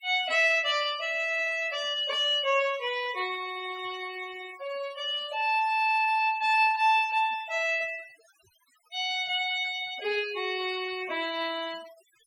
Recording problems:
noise reduction artefacts; signal-to-artefact ratio 19 dB

